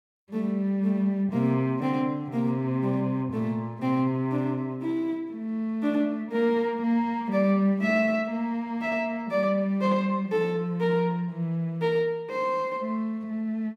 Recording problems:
none

